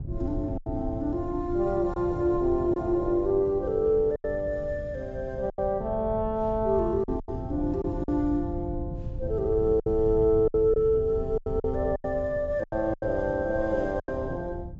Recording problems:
treble cut off; nothing above 7.5 kHz
wind noise; below 120 Hz, SNR 11 dB
lost packets; 7% of the sound replaced, filled with silence

